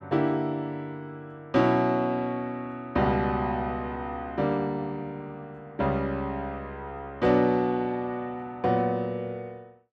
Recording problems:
none

